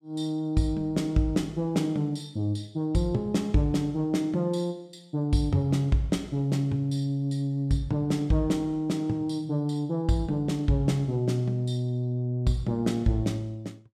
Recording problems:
none

